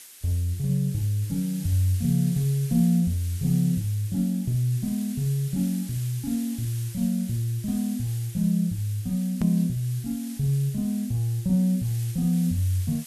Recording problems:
background hiss; SNR 16 dB
edit click; at 9.5 s

